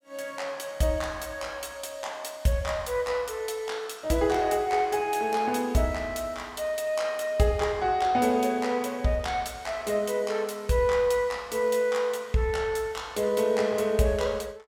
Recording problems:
none

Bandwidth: 17 kHz